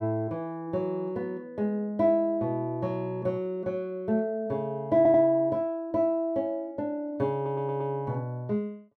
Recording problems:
audio stuttering; at 5 s and at 7.5 s

